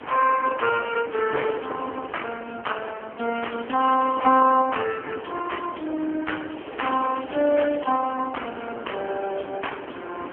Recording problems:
telephone audio; 240 Hz to 3.2 kHz, AMR-NB
wind noise; below 1 kHz, SNR 13 dB
crackle; at 3.5 s and from 6.5 to 8 s; loose cable, SNR 21 dB

